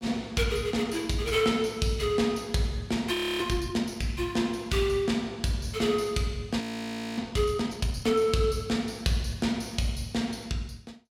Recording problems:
audio freezing; at 3 s and at 6.5 s for 0.5 s

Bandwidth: 16 kHz